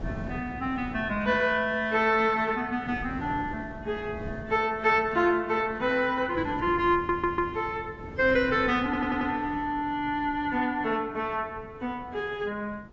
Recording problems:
lossy compression; AAC, log-spectral distance 2 dB
wind on the microphone; below 330 Hz, SNR 16 dB
audio stuttering; at 7 s and at 9 s

